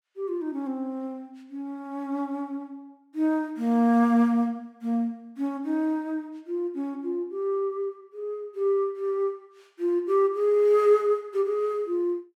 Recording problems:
none

